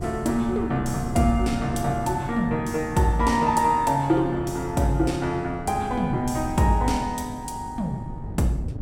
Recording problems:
hum; 50 Hz, harmonics up to 1.1 kHz, SNR 22 dB
wind noise; below 180 Hz, SNR 12 dB

